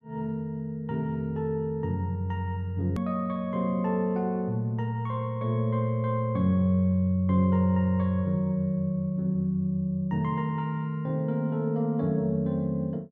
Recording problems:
hard cut with a click; at 3 s

